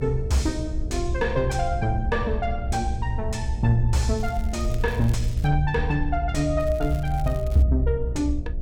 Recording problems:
distorted audio; soft clipping, signal-to-distortion ratio 11 dB
electrical hum; 60 Hz, harmonics up to 720 Hz, SNR 12 dB
low-frequency rumble; below 66 Hz, SNR 4 dB
crackle; from 4 to 5.5 s and from 6.5 to 7.5 s; loose cable, SNR 23 dB

